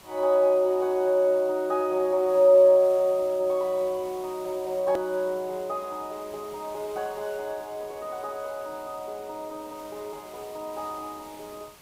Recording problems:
background hiss; slope -2 dB per octave, SNR 24 dB
click at an edit; at 5 s

